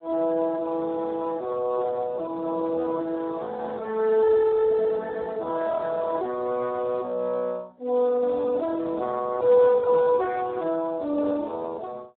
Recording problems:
telephone audio; 260 Hz to 2.2 kHz, Speex

